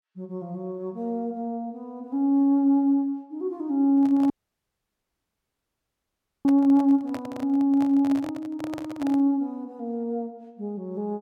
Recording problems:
microphone handling noise; from 4 to 9 s; peak -8 dB vs average level
dropout; at 4.5 s for 2 s

